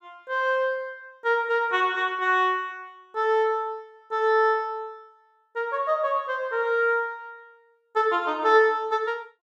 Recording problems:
none

